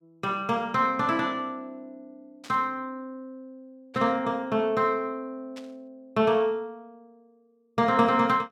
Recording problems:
static burst; at 2.5 s, at 4 s and at 5.5 s; peak -14 dB vs average level

